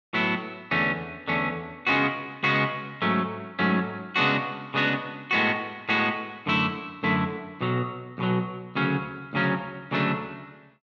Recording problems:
none

